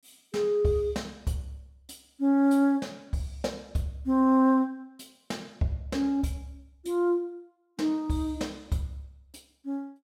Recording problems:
none

